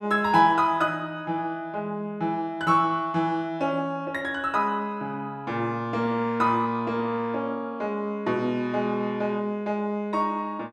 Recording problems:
none

